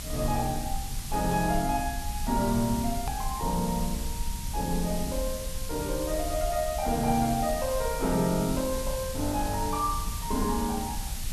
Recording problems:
background hiss; slope +1 dB per octave, SNR 8 dB
low-frequency rumble; below 64 Hz, SNR 8 dB
hard cut with a click; at 3 s

